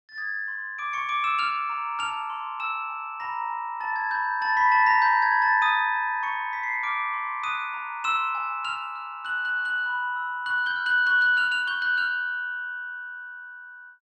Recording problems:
none

